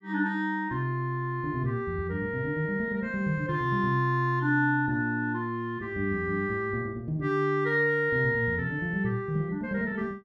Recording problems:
none

